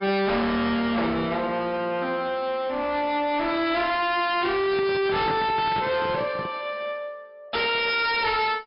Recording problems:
treble cut off; nothing above 5.2 kHz
lossy compression; AAC, log-spectral distance 3 dB
distorted audio; hard clipping, signal-to-distortion ratio 7 dB
handling noise; from 4.5 to 6.5 s; peak -3 dB vs average level

